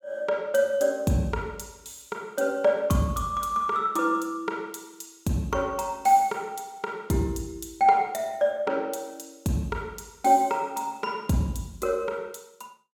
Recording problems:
none

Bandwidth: 17.5 kHz